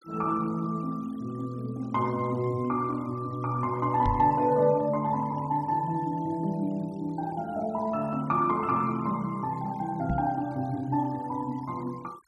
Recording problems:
denoising artefacts; signal-to-artefact ratio 26 dB
microphone bump; at 4 s and at 10 s; peak +3 dB vs average level

